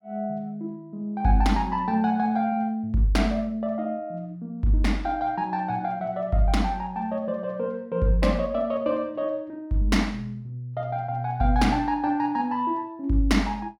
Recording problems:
none

